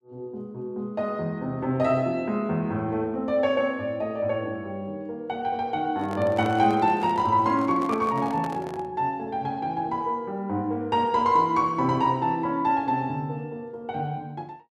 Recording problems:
handling noise; from 6 to 9 s; peak -5 dB vs average level

